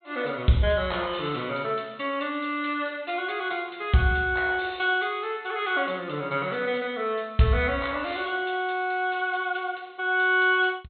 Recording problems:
treble cut off; nothing above 4.2 kHz

